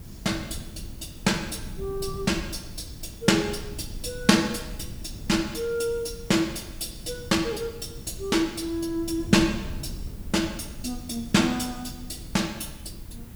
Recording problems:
background hiss; slope -3 dB per octave, SNR 23 dB
wind noise; below 150 Hz, SNR 14 dB

